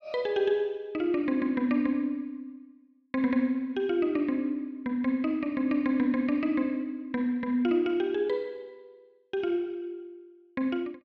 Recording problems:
none

